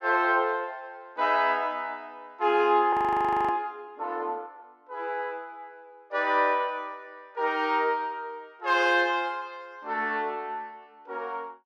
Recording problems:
frozen audio; at 3 s for 0.5 s

